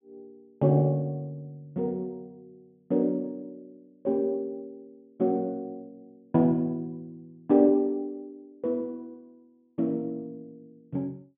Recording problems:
treble missing; nothing above 3.5 kHz

